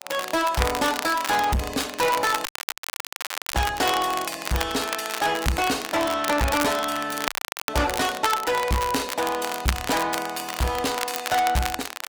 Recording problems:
codec artefacts; Opus, log-spectral distance 5 dB, nothing above 19 kHz
distorted audio; soft clipping, signal-to-distortion ratio 6 dB
crackle; vinyl, SNR 7 dB
audio cutting out; at 2.5 s for 1 s and at 7.5 s

